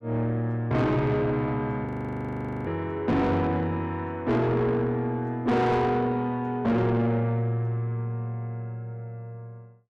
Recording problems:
distortion; soft clipping, signal-to-distortion ratio 7 dB
frozen audio; at 2 s for 1 s

